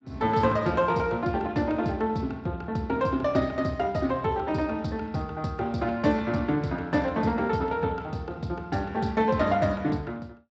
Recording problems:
lossy codec; Speex, log-spectral distance 3 dB, nothing above 7.6 kHz

